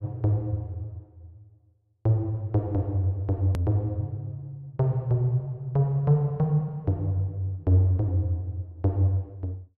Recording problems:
hard cut with a click; at 3.5 s

